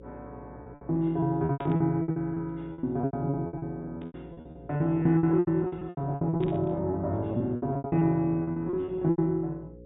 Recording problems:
treble missing; nothing above 4 kHz
hum; 60 Hz, harmonics up to 540 Hz, SNR 20 dB
packet loss; 21% of the sound replaced, filled with repeated pitch periods
static burst; at 1.5 s, at 4 s and at 6.5 s; peak -14 dB vs average level

